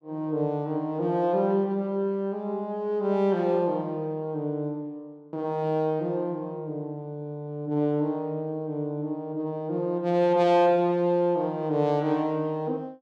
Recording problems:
none

